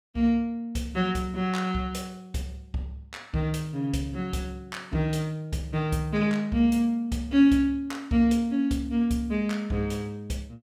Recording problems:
none

